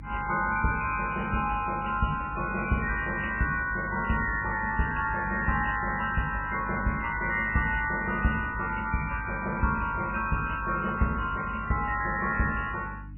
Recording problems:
lossy codec; MP3, log-spectral distance 9 dB, nothing above 2.5 kHz
electrical hum; 50 Hz, harmonics up to 300 Hz, SNR 14 dB
crackling; from 8.5 to 9.5 s and at 12 s; loose cable, SNR 27 dB

